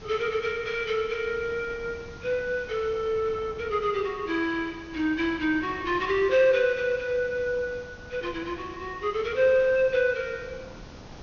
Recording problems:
treble cut off; nothing above 6.5 kHz
background hiss; SNR 27 dB
wind on the microphone; below 620 Hz, SNR 20 dB

